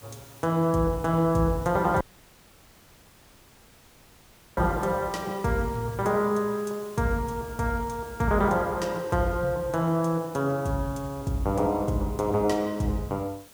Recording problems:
background hiss; slope -1 dB per octave, SNR 22 dB
audio cutting out; at 2 s for 2.5 s

